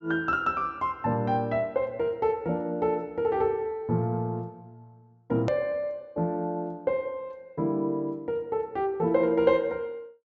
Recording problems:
low-pass filter; nothing above 7.7 kHz
edit click; at 5.5 s

